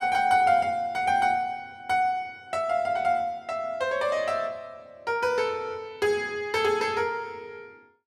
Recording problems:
none

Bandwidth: 15 kHz